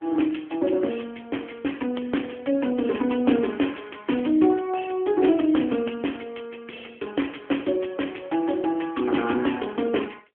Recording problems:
telephone audio; 220 Hz to 3.3 kHz, AMR-NB

